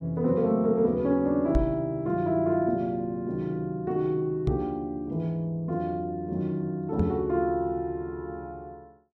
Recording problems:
knock on the microphone; at 1.5 s, at 4.5 s and at 7 s; peak +6 dB vs average level

